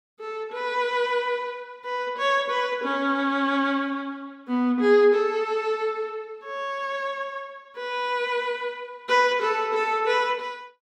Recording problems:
none

